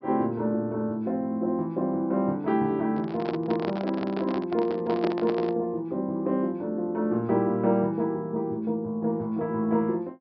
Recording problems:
treble missing; nothing above 5.5 kHz
handling noise; from 3 to 5.5 s; peak -1 dB vs average level

